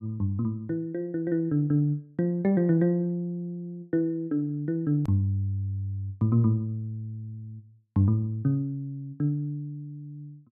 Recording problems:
edit click; at 5 s

